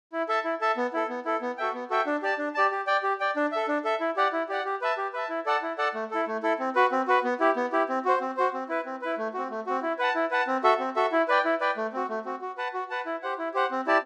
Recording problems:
none

